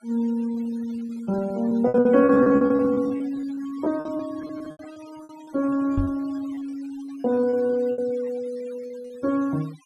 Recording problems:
noise reduction artefacts; signal-to-artefact ratio 23 dB
packet loss; 18% of the sound replaced, filled with repeated pitch periods
microphone thump; at 6 s; peak +1 dB vs average level

